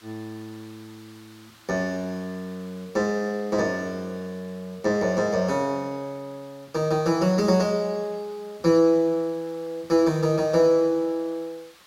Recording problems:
hiss; SNR 27 dB

